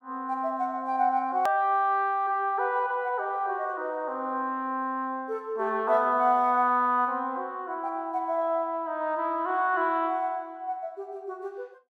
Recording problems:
edit click; at 1.5 s

